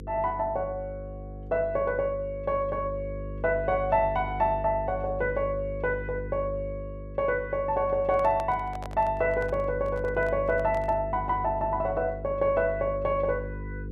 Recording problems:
mains hum; 50 Hz, harmonics up to 500 Hz, SNR 11 dB
microphone handling noise; from 8 to 11 s; peak -6 dB vs average level

